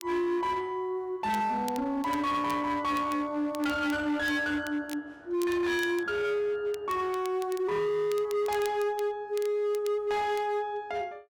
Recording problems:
distorted audio; hard clipping, signal-to-distortion ratio 10 dB
crackle; vinyl, SNR 20 dB

